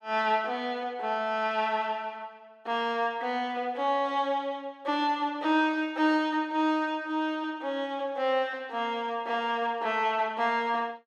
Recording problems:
none

